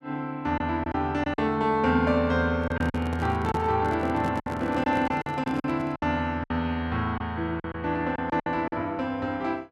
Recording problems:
lost packets; 8% of the sound replaced, filled with silence
microphone handling noise; from 2.5 to 6 s; peak -2 dB vs average level

